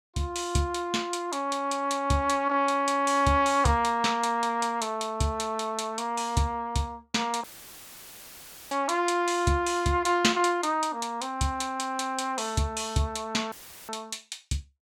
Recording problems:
audio cutting out; at 7.5 s for 1.5 s and at 14 s; filled with static

